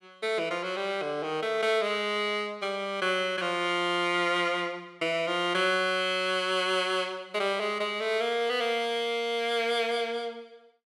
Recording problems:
none

